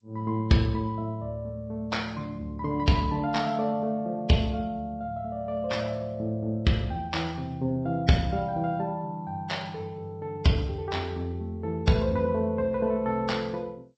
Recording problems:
lossy codec; MP3, then G.722, log-spectral distance 2 dB, nothing above 7.6 kHz

